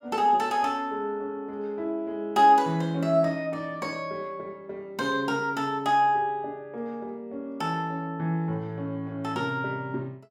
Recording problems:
none

